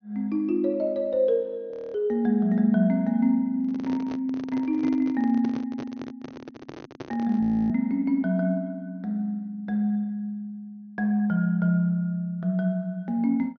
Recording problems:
treble missing; nothing above 6.4 kHz
audio freezing; at 1.5 s and at 7.5 s
microphone handling noise; from 3.5 to 7.5 s; peak -6 dB vs average level

